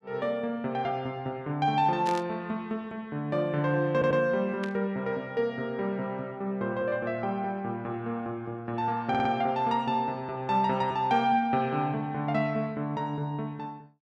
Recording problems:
burst of static; at 2 s and at 4.5 s; peak -6 dB vs average level
stutter; at 4 s and at 9 s

